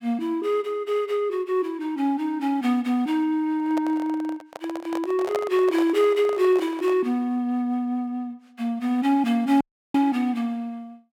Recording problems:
microphone handling noise; from 3.5 to 7 s; peak -1 dB vs average level
audio cutting out; at 9.5 s

